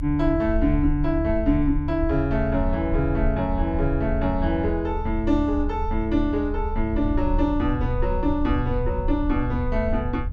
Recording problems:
rumble; below 76 Hz, strongest tone 32 Hz, SNR 5 dB

